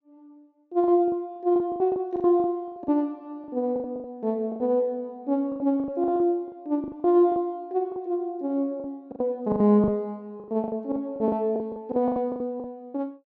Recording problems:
treble missing; nothing above 8 kHz
packet loss; 17% of the sound replaced, filled with the last packet

